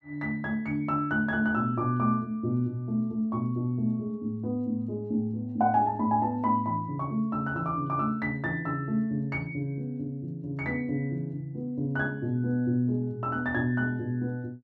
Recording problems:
none

